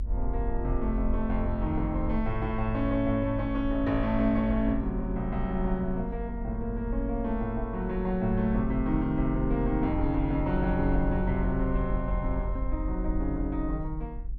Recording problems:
low-frequency rumble; below 48 Hz, strongest tone 44 Hz, SNR 5 dB

